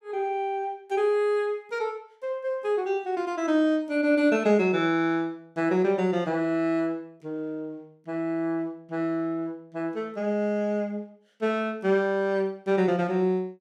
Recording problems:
none

